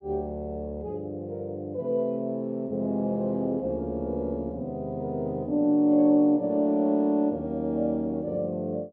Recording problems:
none

